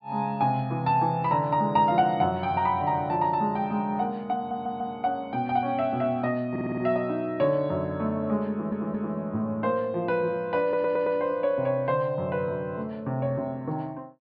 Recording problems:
treble cut off; nothing above 5.1 kHz
stutter; 4 times, first at 4.5 s

